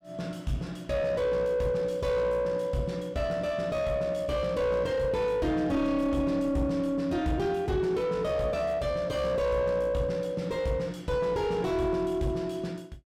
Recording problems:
distortion; soft clipping, signal-to-distortion ratio 6 dB

